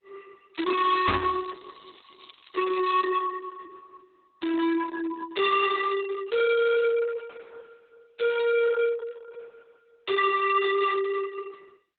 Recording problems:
codec artefacts; Opus, log-spectral distance 7 dB, nothing above 3.7 kHz
distortion; soft clipping, signal-to-distortion ratio 7 dB
crackling; from 0.5 to 3 s; loose cable, SNR 27 dB
microphone bump; at 1 s; peak +1 dB vs average level

